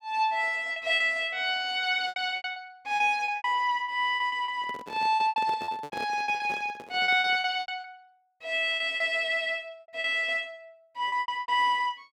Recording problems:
packet loss; 14% of the sound replaced, filled with repeated pitch periods
microphone handling noise; from 4.5 to 7.5 s; peak -9 dB vs average level

